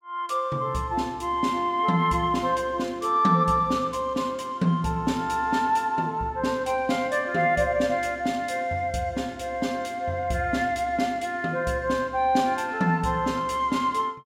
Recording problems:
none

